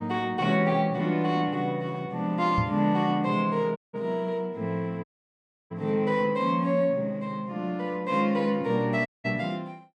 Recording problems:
knock on the microphone; at 2.5 s; peak +3 dB vs average level
audio cutting out; at 4 s, at 5 s for 0.5 s and at 9 s

